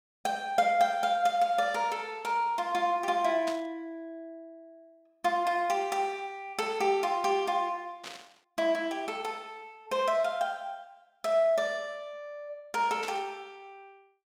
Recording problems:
static burst; at 3.5 s, at 8 s and at 13 s; peak -6 dB vs average level

